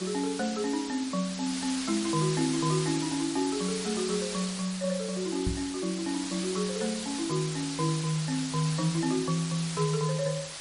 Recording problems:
codec artefacts; MP3, log-spectral distance 12 dB, nothing above 13.1 kHz
hiss; slope +1 dB per octave, SNR 6 dB
microphone bump; at 5.5 s; peak +2 dB vs average level

